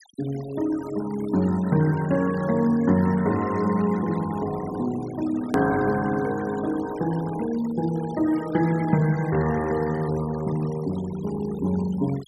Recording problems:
denoising artefacts; signal-to-artefact ratio 18 dB
hard cut with a click; at 5.5 s

